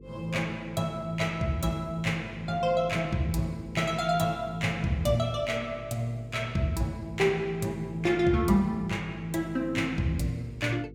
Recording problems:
electrical hum; 50 Hz, harmonics up to 500 Hz, SNR 18 dB

